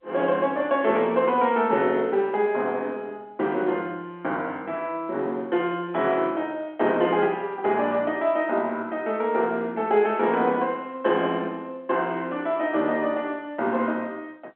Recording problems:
phone line; 220 Hz to 3.3 kHz, G.711

